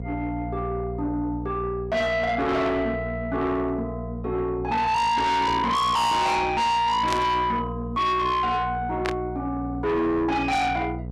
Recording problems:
distortion; soft clipping, signal-to-distortion ratio 6 dB
hum; 60 Hz, harmonics up to 780 Hz, SNR 11 dB
static burst; at 7 s and at 9 s; peak -1 dB vs average level

